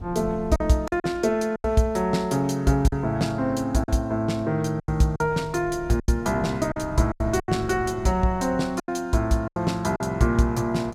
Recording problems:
wind on the microphone; below 210 Hz, SNR 17 dB
lost packets; 8% of the sound replaced, filled with silence

